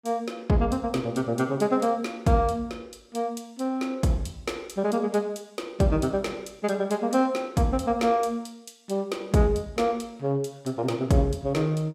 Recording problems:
none

